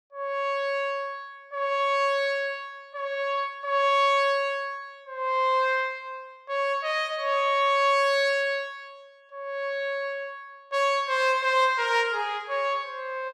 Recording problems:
none

